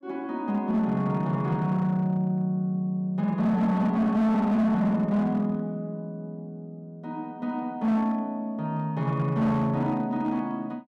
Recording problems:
distortion; hard clipping, signal-to-distortion ratio 11 dB

